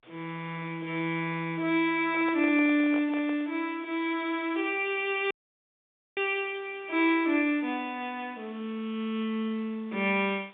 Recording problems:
phone line; 190 Hz to 3.7 kHz, G.711
hiss; SNR 27 dB
microphone handling noise; from 2 to 3.5 s; peak -8 dB vs average level
audio cutting out; at 5.5 s for 1 s

